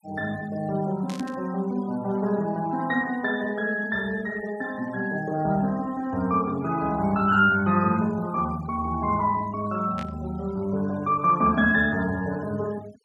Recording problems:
denoising artefacts; signal-to-artefact ratio 22 dB
static burst; at 1 s and at 10 s; peak -10 dB vs average level

